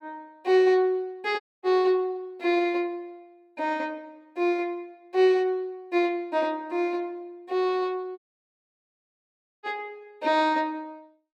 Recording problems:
dropout; at 1.5 s and at 8 s for 1.5 s

